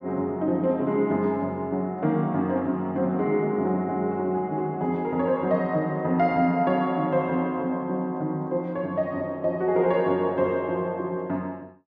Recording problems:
treble missing; nothing above 7.2 kHz

